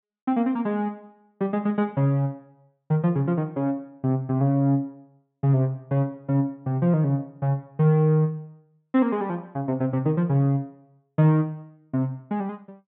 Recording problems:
treble missing; nothing above 4 kHz

